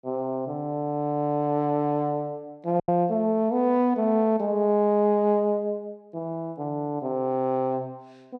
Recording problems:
packet loss; 1% of the sound replaced, filled with silence

